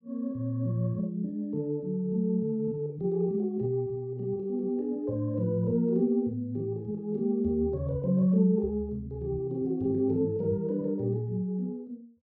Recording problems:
none

